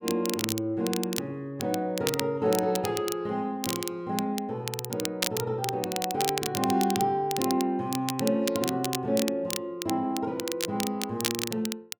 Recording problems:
crackle; vinyl, SNR 5 dB

